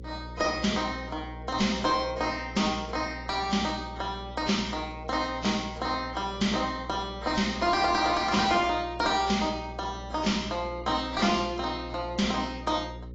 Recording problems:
lossy codec; AAC, log-spectral distance 3 dB
distorted audio; soft clipping, signal-to-distortion ratio 10 dB
electrical hum; 60 Hz, harmonics up to 540 Hz, SNR 15 dB

